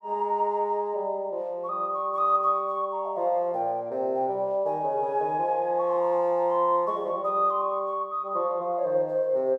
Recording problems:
none

